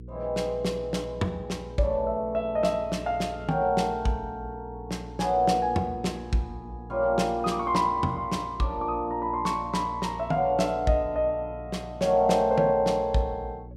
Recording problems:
hum; 60 Hz, harmonics up to 480 Hz, SNR 16 dB

